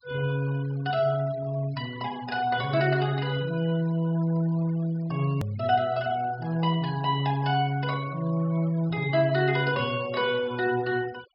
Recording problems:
low-pass filter; nothing above 5.5 kHz
denoising artefacts; signal-to-artefact ratio 19 dB
hard cut with a click; at 5.5 s

